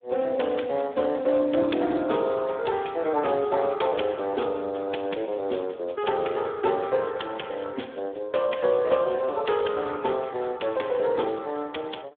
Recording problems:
phone line; 240 Hz to 3.5 kHz, Speex

